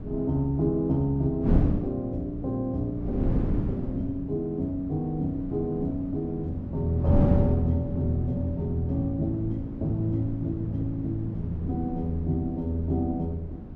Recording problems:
wind on the microphone; below 230 Hz, SNR 5 dB

